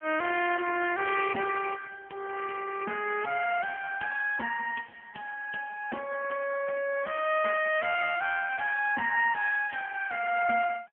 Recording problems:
telephone audio; 260 Hz to 2.8 kHz, AMR-NB

